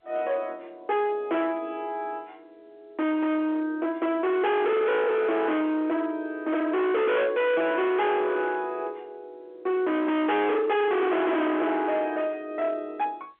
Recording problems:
phone line; 990 Hz to 3.5 kHz, G.711
distortion; hard clipping, signal-to-distortion ratio 6 dB

